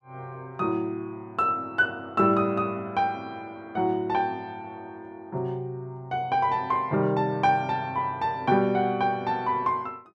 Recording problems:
none

